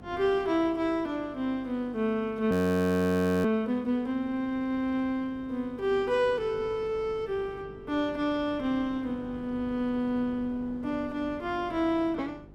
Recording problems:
electrical hum; 50 Hz, harmonics up to 450 Hz, SNR 22 dB
wind noise; below 460 Hz, SNR 21 dB
audio freezing; at 2.5 s for 1 s

